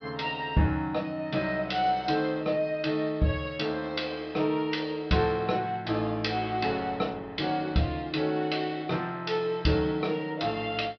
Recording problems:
low-pass filter; nothing above 5.5 kHz

